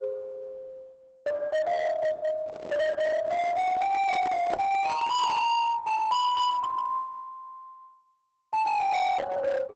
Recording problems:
lossy compression; Opus, log-spectral distance 2 dB, nothing above 6.9 kHz
distorted audio; hard clipping, signal-to-distortion ratio 7 dB
microphone handling noise; from 2.5 to 5.5 s; peak -5 dB vs average level

